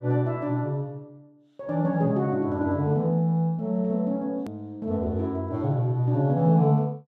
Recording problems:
click at an edit; at 4.5 s

